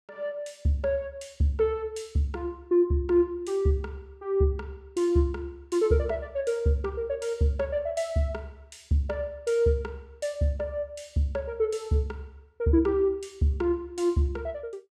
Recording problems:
none

